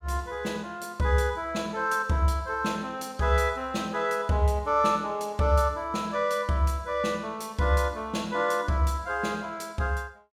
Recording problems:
none

